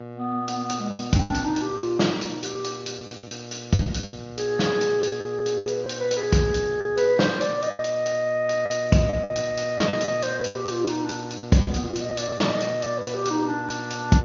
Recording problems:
lossy compression; MP2, then Speex, log-spectral distance 7 dB, nothing above 6.2 kHz
hum; 60 Hz, harmonics up to 2 kHz, SNR 13 dB
packet loss; 11% of the sound replaced, filled with the last packet

